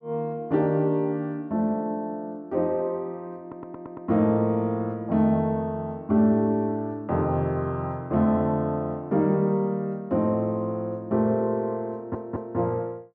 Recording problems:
stutter; at 3.5 s and at 12 s

